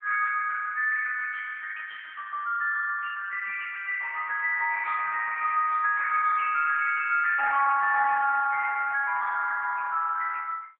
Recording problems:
phone line; 240 Hz to 2.8 kHz, AMR-NB

